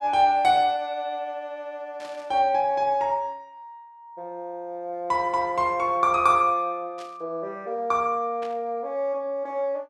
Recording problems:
static burst; at 2 s, at 7 s and at 8.5 s; peak -15 dB vs average level

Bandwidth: 12.5 kHz